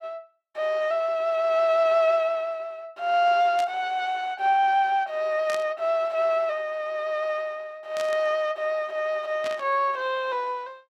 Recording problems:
static burst; 4 times, first at 3.5 s; peak -7 dB vs average level

